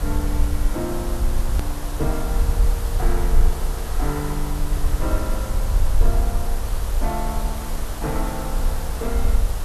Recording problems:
background hiss; SNR 3 dB
rumble; below 52 Hz, SNR -5 dB
edit click; at 1.5 s

